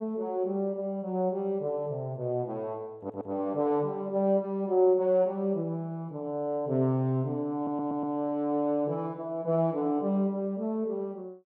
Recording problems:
audio stuttering; at 3 s and at 7.5 s

